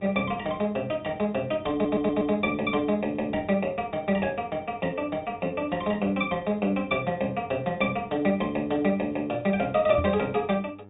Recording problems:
treble cut off; nothing above 4 kHz
hum; 50 Hz, harmonics up to 1.3 kHz, SNR 25 dB
audio stuttering; at 1.5 s
knock on the microphone; at 10 s; peak 0 dB vs average level

